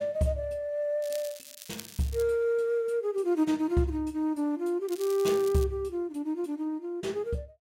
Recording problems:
crackling; from 1 to 2 s and at 5 s; loose cable, SNR 15 dB

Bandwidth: 16 kHz